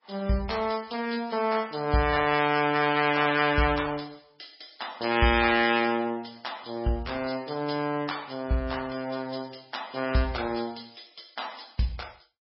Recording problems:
lossy codec; MP3, log-spectral distance 7 dB, nothing above 5.2 kHz

